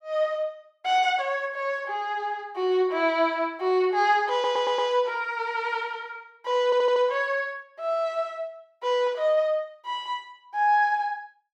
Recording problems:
audio stuttering; at 4.5 s and at 6.5 s

